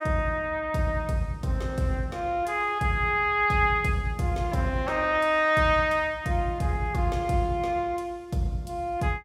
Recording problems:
none

